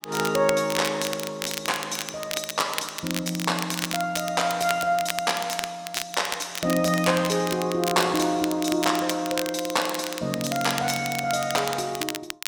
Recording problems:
crackle; vinyl, SNR 7 dB

